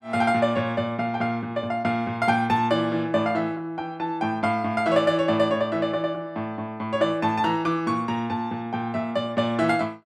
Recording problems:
none

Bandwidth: 12.5 kHz